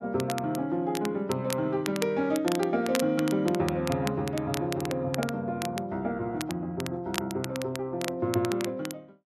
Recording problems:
crackle; vinyl, SNR 10 dB

